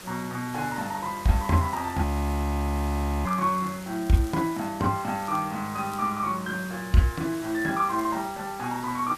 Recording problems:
hiss; slope -2 dB per octave, SNR 16 dB
crackling; 4 times, first at 1.5 s; loose cable, SNR 25 dB
frozen audio; at 2 s for 1 s

